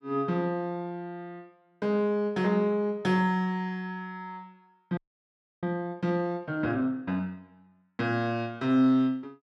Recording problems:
frozen audio; at 5 s for 0.5 s

